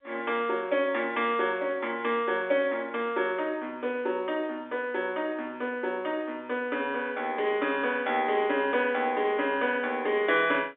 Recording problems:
telephone audio; 320 Hz to 3.6 kHz, G.711

